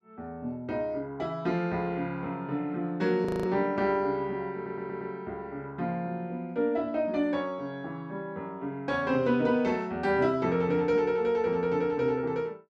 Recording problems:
frozen audio; at 3.5 s
stutter; at 4.5 s

